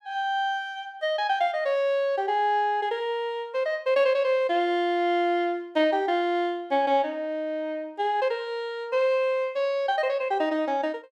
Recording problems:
none

